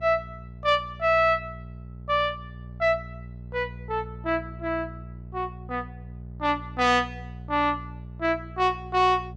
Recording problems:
electrical hum; 60 Hz, harmonics up to 600 Hz, SNR 15 dB

